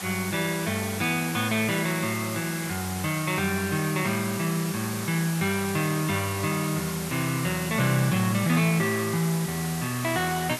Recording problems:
background hiss; slope -1 dB per octave, SNR 8 dB

